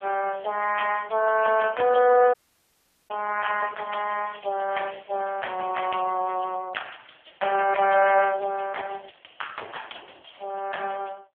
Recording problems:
telephone audio; 340 Hz to 2.8 kHz, AMR-NB
audio cutting out; at 2.5 s for 1 s
crackle; from 3.5 to 6 s; loose cable, SNR 27 dB

